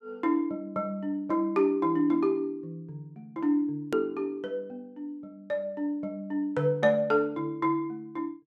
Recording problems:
hard cut with a click; at 4 s

